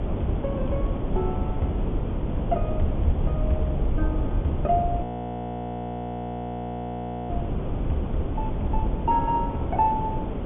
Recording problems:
treble cut off; nothing above 3.5 kHz
hiss; SNR 2 dB
rumble; below 110 Hz, SNR 5 dB
wind noise; below 78 Hz, SNR 3 dB
audio freezing; at 5 s for 2.5 s

